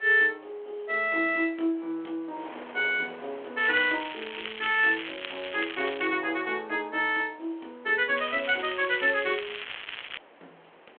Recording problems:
telephone audio; 280 Hz to 3.4 kHz, G.726
wind noise; below 1.9 kHz, SNR 24 dB
crackling; from 3.5 to 6 s and from 8 to 10 s; loose cable, SNR 11 dB

